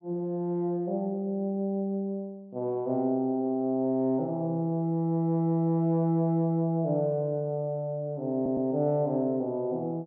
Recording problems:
stutter; at 8.5 s

